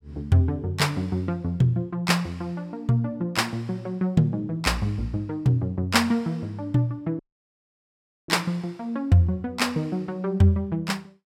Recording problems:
audio cutting out; at 7 s for 1 s

